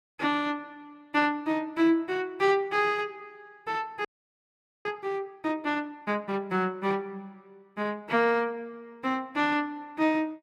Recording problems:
audio freezing; at 4 s for 1 s

